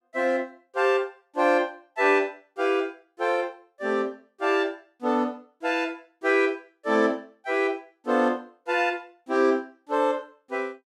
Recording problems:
none

